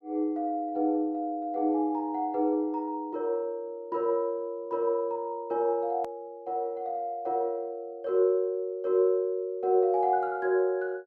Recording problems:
edit click; at 6 s

